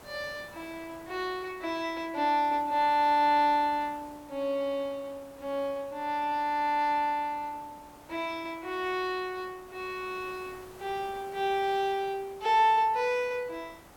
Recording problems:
background hiss; SNR 22 dB

